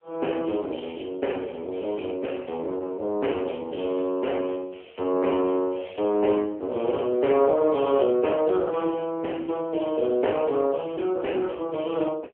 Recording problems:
phone line; 280 Hz to 3.3 kHz, AMR-NB

